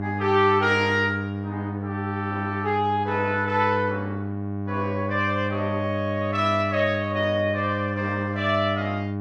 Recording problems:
hum; 50 Hz, harmonics up to 1.2 kHz, SNR 5 dB

